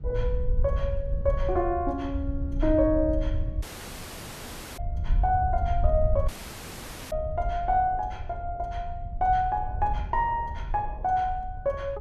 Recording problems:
wind on the microphone; below 76 Hz, SNR 4 dB
audio cutting out; at 3.5 s for 1 s and at 6.5 s for 1 s

